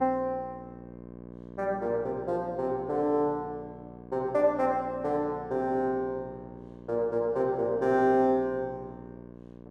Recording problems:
electrical hum; 60 Hz, harmonics up to 1.2 kHz, SNR 17 dB

